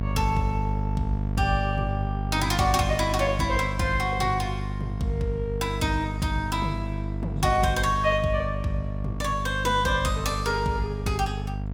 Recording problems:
electrical hum; 50 Hz, harmonics up to 700 Hz, SNR 4 dB

